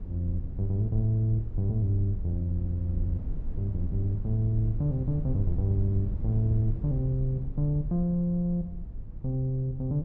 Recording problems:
rumble; below 76 Hz, SNR 8 dB

